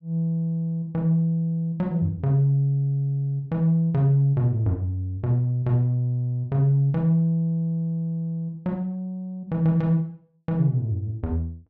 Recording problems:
none

